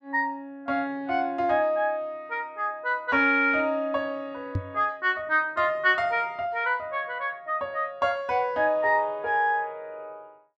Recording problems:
microphone bump; at 4.5 s; peak +1 dB vs average level

